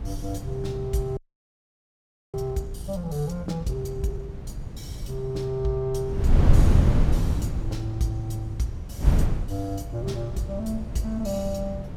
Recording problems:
wind noise; below 120 Hz, SNR -2 dB
frozen audio; at 1 s for 1 s

